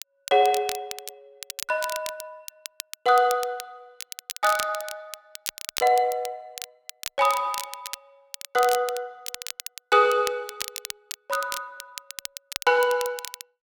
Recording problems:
crackling; vinyl, SNR 12 dB

